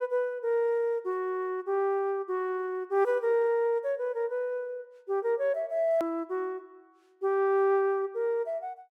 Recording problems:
hard cut with a click; at 6 s

